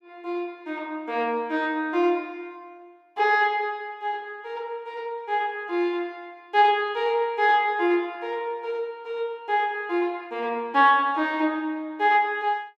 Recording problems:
none

